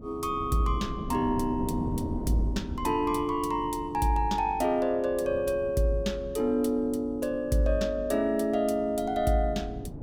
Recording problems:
wind noise; below 250 Hz, SNR 12 dB

